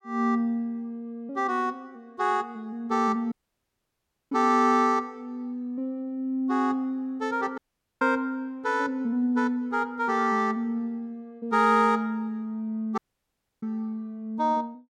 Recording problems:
audio cutting out; at 3.5 s for 1 s, at 7.5 s and at 13 s for 0.5 s

